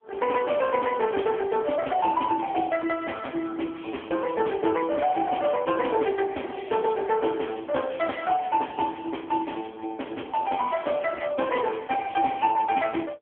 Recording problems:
phone line; 280 Hz to 3.3 kHz, AMR-NB

